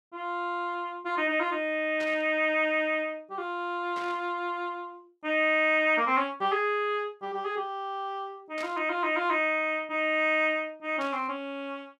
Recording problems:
burst of static; 4 times, first at 2 s; peak -10 dB vs average level

